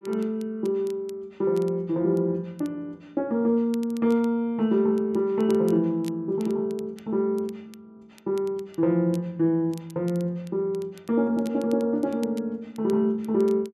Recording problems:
crackle; vinyl, SNR 27 dB

